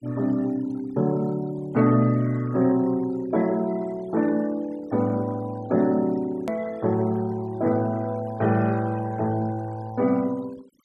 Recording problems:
noise reduction artefacts; signal-to-artefact ratio 23 dB
edit click; at 6.5 s

